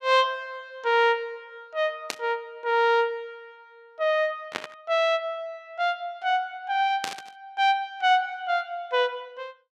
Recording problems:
burst of static; at 2 s, at 4.5 s and at 7 s; peak 0 dB vs average level

